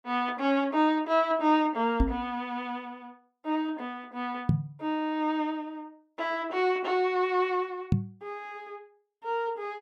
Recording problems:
microphone bump; at 2 s, at 4.5 s and at 8 s; peak +8 dB vs average level

